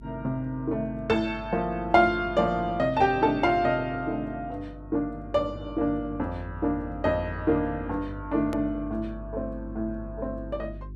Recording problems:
electrical hum; 50 Hz, harmonics up to 400 Hz, SNR 15 dB
click at an edit; at 8.5 s

